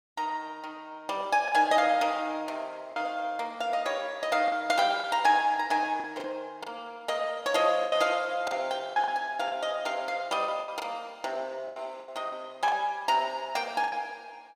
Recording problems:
lost packets; 7% of the sound replaced, filled with the last packet

